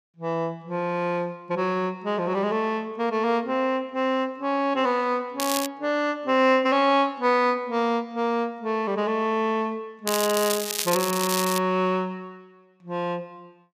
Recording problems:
crackle; at 5.5 s and from 10 to 12 s; loose cable, SNR 4 dB

